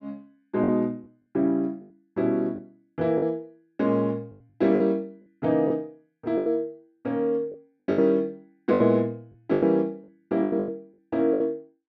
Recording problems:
lost packets; 9% of the sound replaced, filled with the last packet

